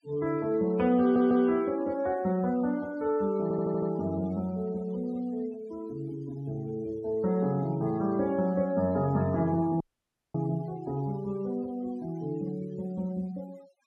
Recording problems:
denoising artefacts; signal-to-artefact ratio 25 dB
audio stuttering; at 1 s and at 3.5 s
audio cutting out; at 10 s for 0.5 s

